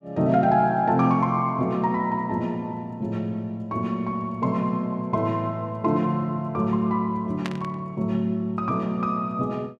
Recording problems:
static burst; at 7.5 s; peak -4 dB vs average level

